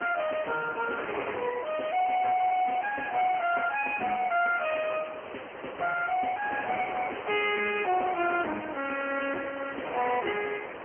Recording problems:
phone line; 280 Hz to 3.1 kHz, AMR-NB
distorted audio; soft clipping, signal-to-distortion ratio 11 dB
wind noise; below 1.6 kHz, SNR 10 dB

